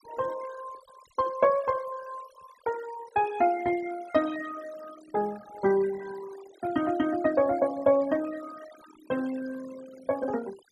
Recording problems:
denoising artefacts; signal-to-artefact ratio 18 dB

